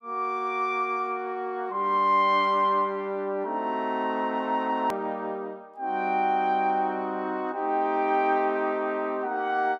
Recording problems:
hard cut with a click; at 5 s

